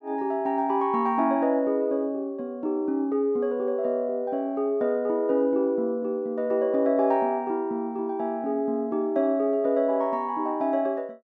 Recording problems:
none

